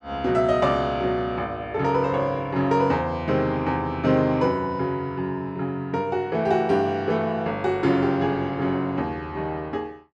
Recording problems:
none

